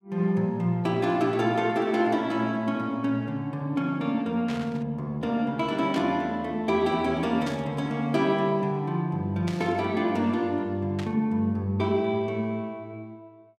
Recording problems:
static burst; 5 times, first at 4.5 s; peak -7 dB vs average level

